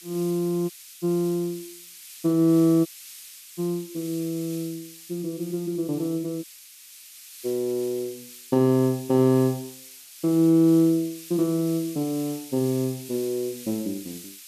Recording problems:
background hiss; SNR 17 dB
audio cutting out; at 0.5 s, at 3 s for 0.5 s and at 6.5 s for 1 s

